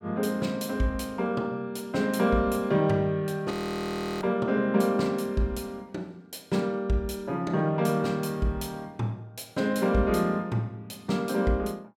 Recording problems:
frozen audio; at 3.5 s for 0.5 s

